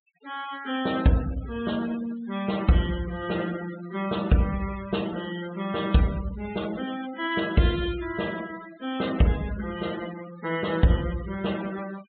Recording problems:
low-pass filter; nothing above 4 kHz
denoising artefacts; signal-to-artefact ratio 16 dB

